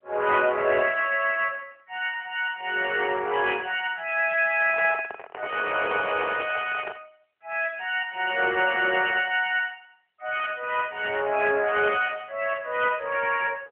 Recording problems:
phone line; 320 Hz to 3.3 kHz, AMR-NB
handling noise; from 4.5 to 7 s; peak -6 dB vs average level

